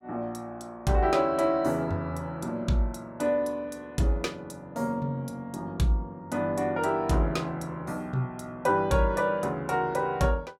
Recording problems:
none

